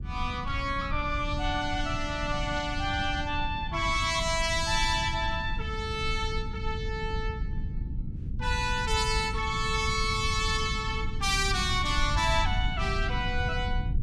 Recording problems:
rumble; below 100 Hz, SNR 6 dB

